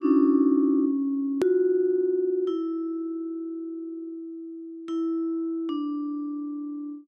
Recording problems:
edit click; at 1.5 s

